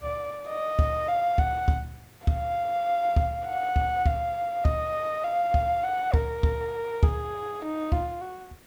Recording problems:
background hiss; slope -4 dB per octave, SNR 26 dB

